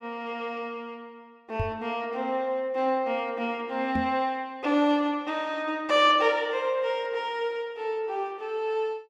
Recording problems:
knock on the microphone; at 1.5 s and at 4 s; peak 0 dB vs average level

